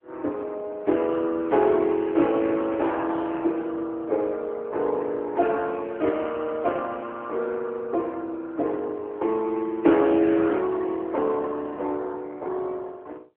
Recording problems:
telephone audio; 260 Hz to 3.7 kHz, AMR-NB

